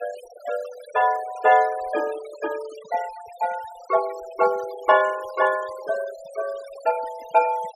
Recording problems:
noise reduction artefacts; signal-to-artefact ratio 17 dB

